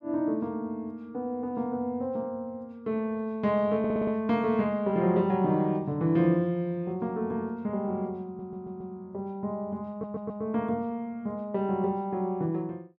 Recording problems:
stutter; at 4 s, at 8.5 s and at 10 s

